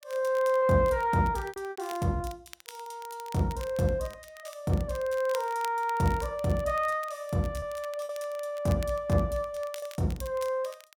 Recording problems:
crackling; vinyl, SNR 20 dB
packet loss; 4% of the sound replaced, filled with repeated pitch periods

